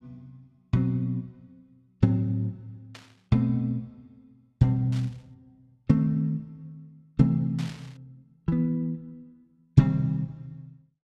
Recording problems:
burst of static; at 3 s, at 5 s and at 7.5 s; peak -12 dB vs average level

